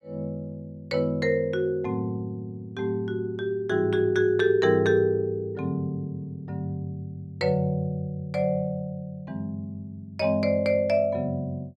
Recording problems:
none

